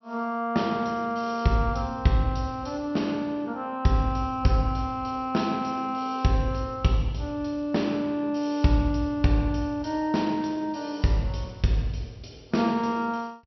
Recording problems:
low-pass filter; nothing above 5.8 kHz

